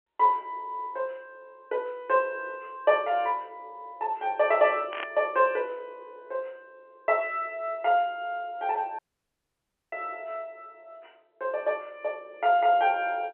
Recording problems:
telephone audio; 300 Hz to 3.3 kHz, G.711
burst of static; at 5 s; peak -4 dB vs average level
dropout; at 9 s for 1 s

